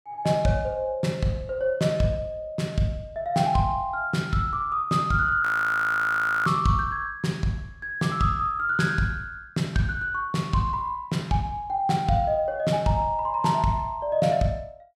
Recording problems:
frozen audio; at 5.5 s for 1 s

